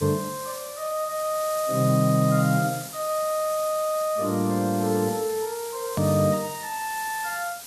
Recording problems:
background hiss; slope 0 dB per octave, SNR 11 dB
edit click; at 6 s

